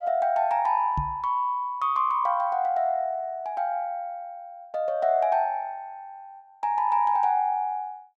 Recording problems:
microphone bump; at 1 s; peak -2 dB vs average level

